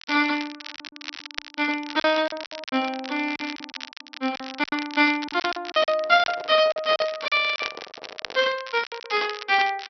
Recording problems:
low-pass filter; nothing above 5.8 kHz
crackling; vinyl, SNR 13 dB
packet loss; 12% of the sound replaced, filled with silence
handling noise; from 6 to 8.5 s; peak -8 dB vs average level

